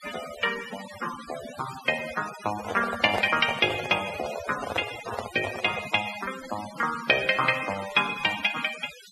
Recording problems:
noise reduction artefacts; signal-to-artefact ratio 11 dB
handling noise; from 2.5 to 6 s; peak +1 dB vs average level

